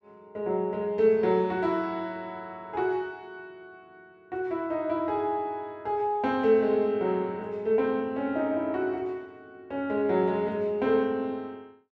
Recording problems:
none

